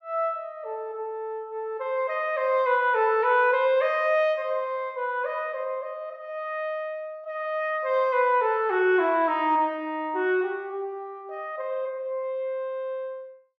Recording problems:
none

